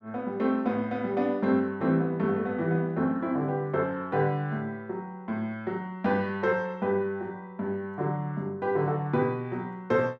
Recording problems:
none

